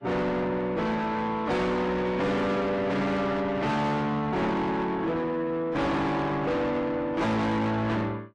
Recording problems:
lossy codec; MP3, then AAC, log-spectral distance 2 dB, nothing above 9.8 kHz
distortion; soft clipping, signal-to-distortion ratio 6 dB

